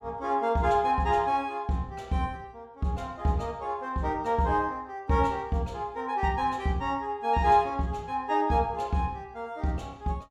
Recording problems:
none

